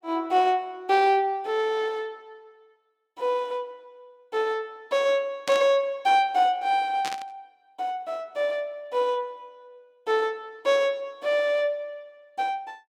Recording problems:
burst of static; at 5.5 s and at 7 s; peak -3 dB vs average level

